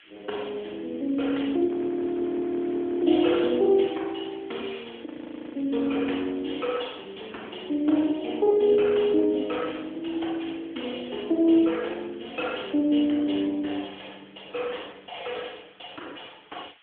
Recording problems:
telephone audio; 260 Hz to 3.4 kHz, AMR-NB
hiss; SNR 26 dB
audio freezing; at 1.5 s for 1.5 s and at 5 s for 0.5 s

